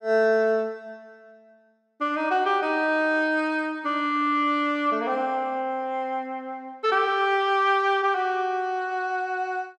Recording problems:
none

